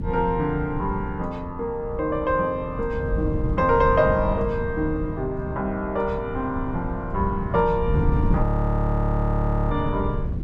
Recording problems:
wind noise; below 160 Hz, SNR 3 dB
frozen audio; at 8.5 s for 1.5 s

